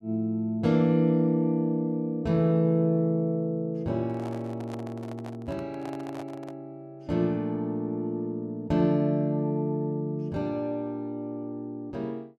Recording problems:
handling noise; from 4 to 6.5 s; peak -9 dB vs average level

